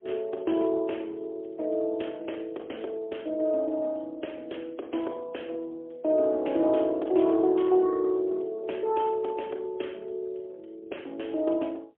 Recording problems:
telephone audio; 280 Hz to 3.6 kHz, AMR-NB, then MP3

